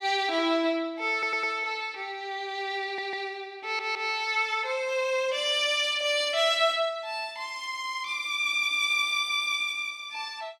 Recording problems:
audio stuttering; at 1 s, at 3 s and at 3.5 s

